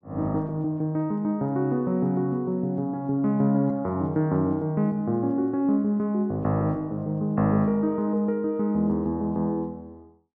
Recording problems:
none

